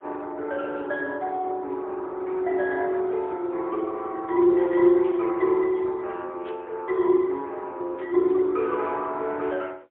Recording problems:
phone line; 240 Hz to 3.3 kHz, AMR-NB, then MP3
static burst; at 5 s, at 6.5 s and at 8 s; peak -17 dB vs average level

